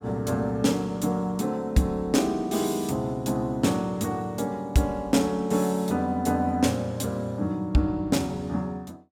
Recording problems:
none

